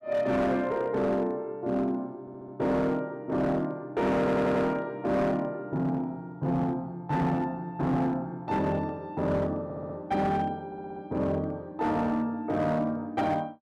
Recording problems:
distortion; hard clipping, signal-to-distortion ratio 11 dB
audio stuttering; 4 times, first at 2 s

